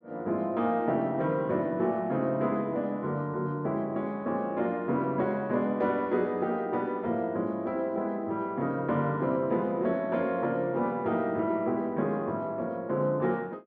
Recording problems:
none

